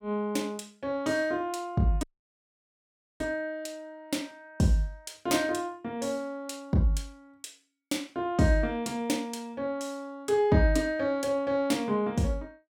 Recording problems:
audio cutting out; at 2 s for 1 s

